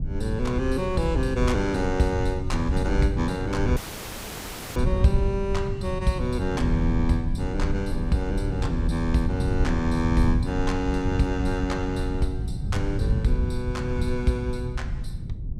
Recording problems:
rumble; below 110 Hz, SNR 2 dB
dropout; at 4 s for 1 s

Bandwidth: 15.5 kHz